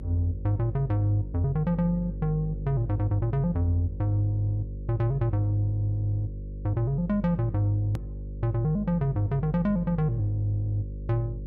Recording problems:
hum; 50 Hz, harmonics up to 550 Hz, SNR 10 dB
click at an edit; at 8 s

